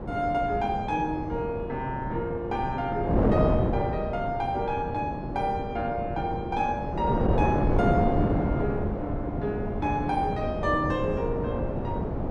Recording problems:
wind on the microphone; below 480 Hz, SNR 0 dB

